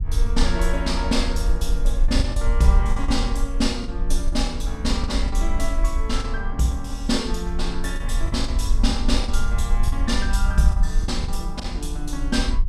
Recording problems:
rumble; below 48 Hz, SNR 0 dB
packet loss; 6% of the sound replaced, filled with the last packet

